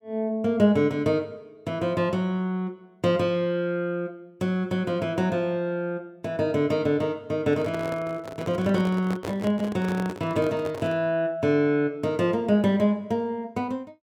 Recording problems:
handling noise; from 7.5 to 11 s; peak -3 dB vs average level

